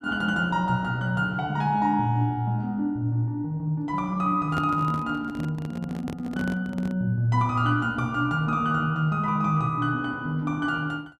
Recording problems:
microphone handling noise; from 4.5 to 7 s; peak -2 dB vs average level

